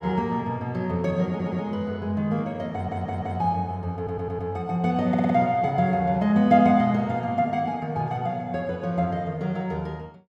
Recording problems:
audio stuttering; 4 times, first at 1.5 s

